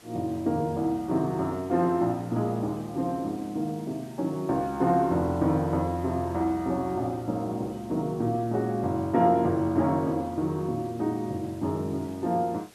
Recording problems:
hiss; slope -3 dB per octave, SNR 25 dB

